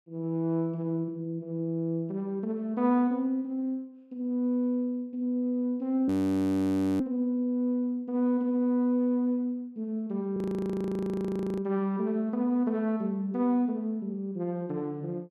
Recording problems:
audio freezing; at 6 s for 1 s and at 10 s for 1 s

